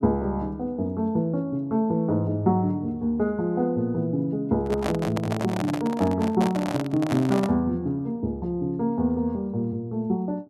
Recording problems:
microphone handling noise; from 4.5 to 7.5 s; peak 0 dB vs average level

